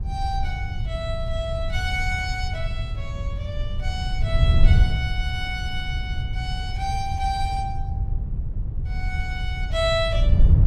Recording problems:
wind on the microphone; below 92 Hz, SNR -3 dB

